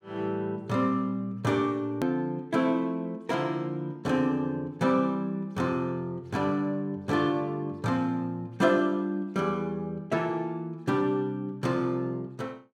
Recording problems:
edit click; at 2 s

